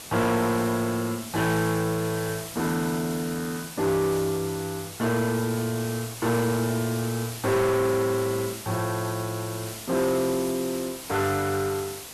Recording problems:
distortion; soft clipping, signal-to-distortion ratio 10 dB
hiss; slope -1 dB per octave, SNR 11 dB

